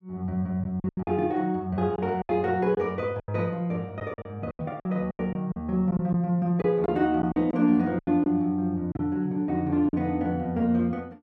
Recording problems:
packet loss; 9% of the sound replaced, filled with silence

